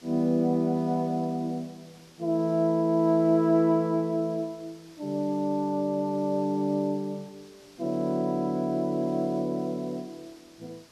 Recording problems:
background hiss; slope -2 dB per octave, SNR 27 dB

